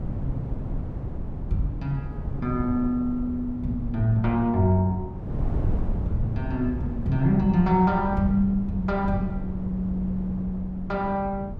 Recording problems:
wind noise; below 150 Hz, SNR 7 dB

